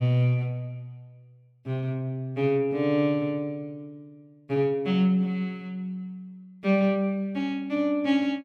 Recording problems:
none

